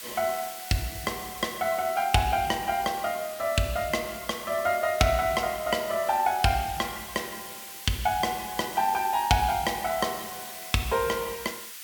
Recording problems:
hiss; SNR 11 dB

